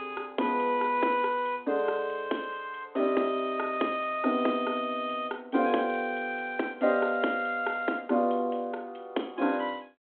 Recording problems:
phone line; 220 Hz to 3.4 kHz, G.726

